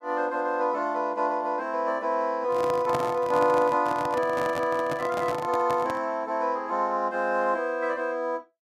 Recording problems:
microphone handling noise; from 2.5 to 6 s; peak -1 dB vs average level

